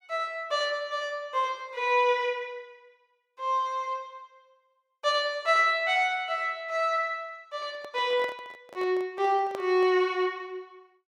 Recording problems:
microphone handling noise; from 7.5 to 10 s; peak -7 dB vs average level

